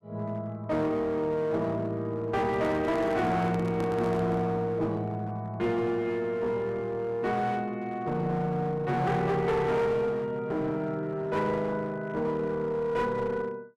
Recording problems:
distorted audio; hard clipping, uneven, signal-to-distortion ratio 9 dB
microphone handling noise; from 2.5 to 4.5 s; peak -2 dB vs average level

